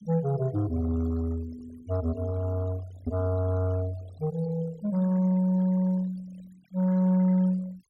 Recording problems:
noise reduction artefacts; signal-to-artefact ratio 22 dB

